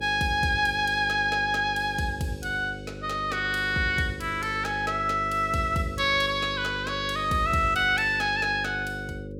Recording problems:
hum; 50 Hz, harmonics up to 550 Hz, SNR 13 dB

